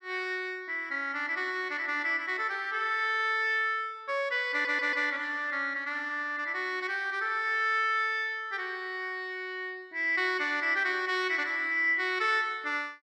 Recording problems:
audio stuttering; at 4.5 s

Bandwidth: 12.5 kHz